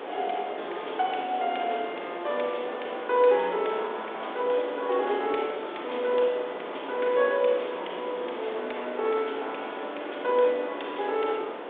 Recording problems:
telephone audio; 320 Hz to 3.6 kHz, G.726
hiss; SNR 9 dB

